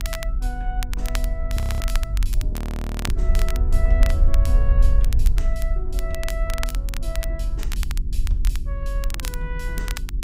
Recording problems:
hum; 50 Hz, harmonics up to 400 Hz, SNR 5 dB
rumble; below 50 Hz, SNR -11 dB
crackling; vinyl, SNR 2 dB
audio freezing; at 1.5 s and at 2.5 s for 0.5 s

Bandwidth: 15.5 kHz